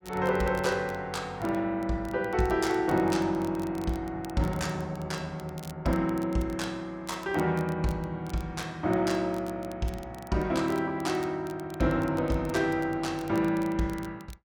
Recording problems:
crackle; vinyl, SNR 23 dB

